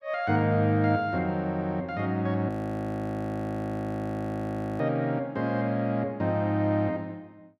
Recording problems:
audio freezing; at 2.5 s for 2.5 s

